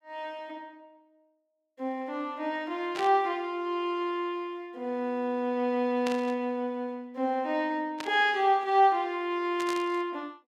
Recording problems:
burst of static; 4 times, first at 3 s; peak -4 dB vs average level

